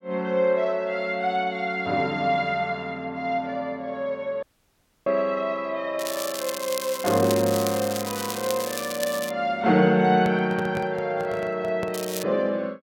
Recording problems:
dropout; at 4.5 s for 0.5 s
crackle; from 6 to 9.5 s and at 12 s; loose cable, SNR 8 dB
handling noise; from 10 to 12 s; peak -4 dB vs average level

